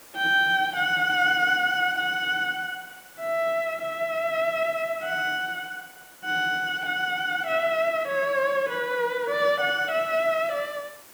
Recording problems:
hiss; slope -3 dB per octave, SNR 23 dB

